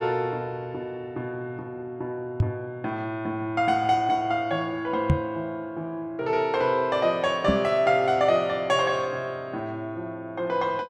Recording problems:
microphone bump; at 2.5 s, at 5 s and at 7.5 s; peak +8 dB vs average level

